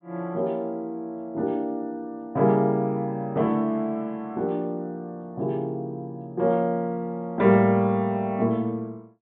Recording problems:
treble missing; nothing above 4 kHz

